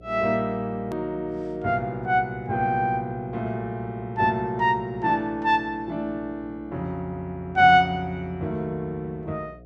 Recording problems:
hum; 60 Hz, harmonics up to 720 Hz, SNR 23 dB
hard cut with a click; at 1 s

